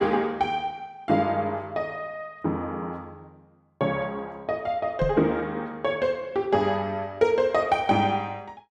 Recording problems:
microphone thump; at 5 s; peak +2 dB vs average level

